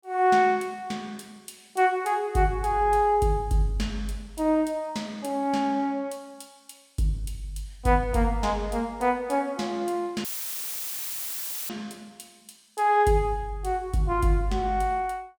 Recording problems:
dropout; at 10 s for 1.5 s; filled with static

